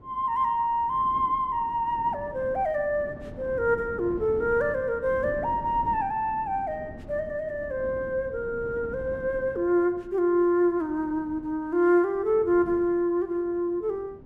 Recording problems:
wind on the microphone; below 330 Hz, SNR 17 dB

